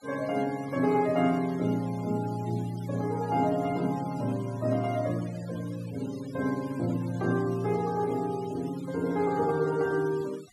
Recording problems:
noise reduction artefacts; signal-to-artefact ratio 21 dB

